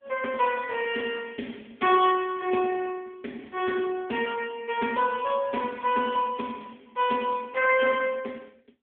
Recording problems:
phone line; 240 Hz to 3.3 kHz, AMR-NB

